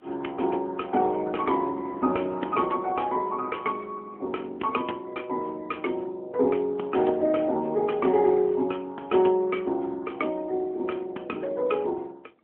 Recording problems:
phone line; 220 Hz to 3.4 kHz, AMR-NB
wind on the microphone; below 570 Hz, SNR 20 dB

